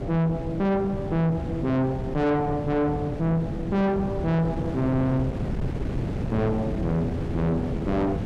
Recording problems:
distortion; soft clipping, signal-to-distortion ratio 6 dB
wind on the microphone; below 300 Hz, SNR 5 dB

